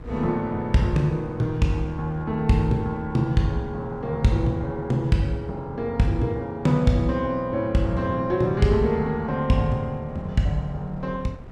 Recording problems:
wind noise; below 250 Hz, SNR 19 dB

